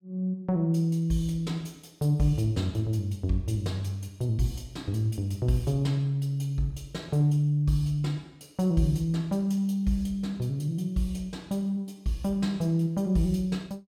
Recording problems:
none

